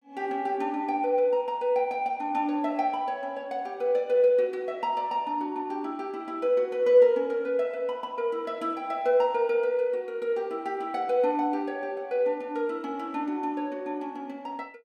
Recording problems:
none

